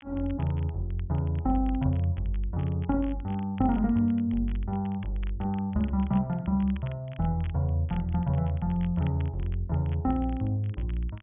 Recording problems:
treble missing; nothing above 3.4 kHz
crackling; vinyl, SNR 26 dB

